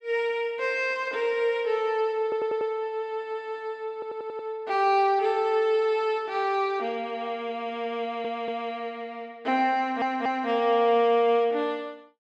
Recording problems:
audio stuttering; 4 times, first at 2 s

